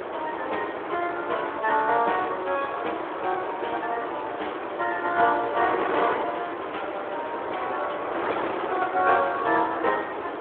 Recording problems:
phone line; 260 Hz to 3.5 kHz, Speex
background hiss; SNR 27 dB
wind on the microphone; below 1.3 kHz, SNR 4 dB

